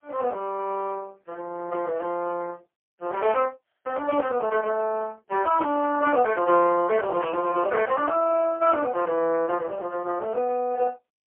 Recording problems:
telephone audio; 300 Hz to 3.1 kHz, AMR-NB, then MP3

